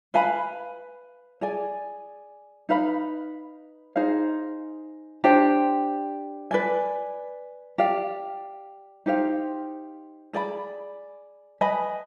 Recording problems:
none

